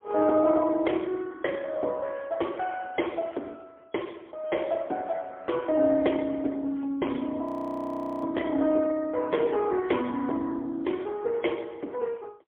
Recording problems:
telephone audio; 240 Hz to 2.8 kHz, AMR-NB, then MP3
audio freezing; at 7.5 s for 1 s

